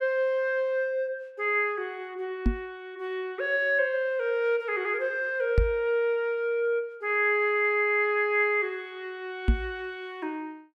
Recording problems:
microphone bump; at 2.5 s, at 5.5 s and at 9.5 s; peak +7 dB vs average level

